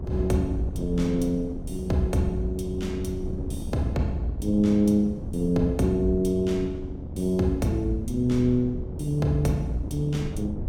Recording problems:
low-frequency rumble; below 78 Hz, SNR 13 dB
wind on the microphone; below 270 Hz, SNR 11 dB

